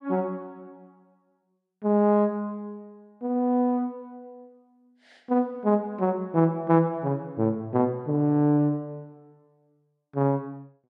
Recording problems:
none

